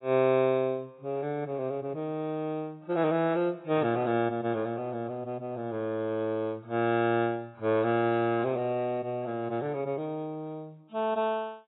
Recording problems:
lossy compression; AAC, log-spectral distance 2 dB, nothing above 3.8 kHz

